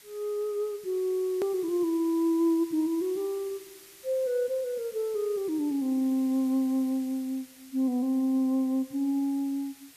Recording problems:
background hiss; slope +1 dB per octave, SNR 21 dB
hard cut with a click; at 1.5 s

